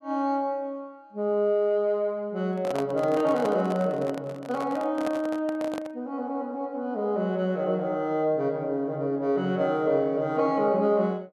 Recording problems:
handling noise; from 2.5 to 6 s; peak -2 dB vs average level

